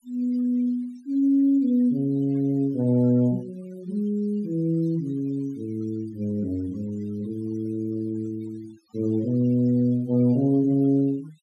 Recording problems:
denoising artefacts; signal-to-artefact ratio 27 dB

